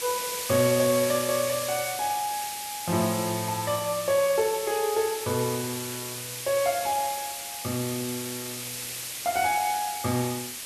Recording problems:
hiss; SNR 5 dB

